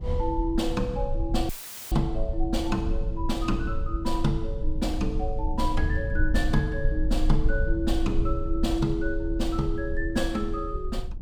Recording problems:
low-frequency rumble; below 54 Hz, strongest tone 22 Hz, SNR 2 dB
audio cutting out; at 1.5 s; filled with static

